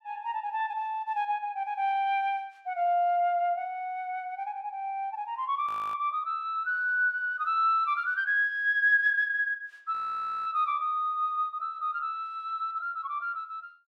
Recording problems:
frozen audio; at 5.5 s and at 10 s for 0.5 s

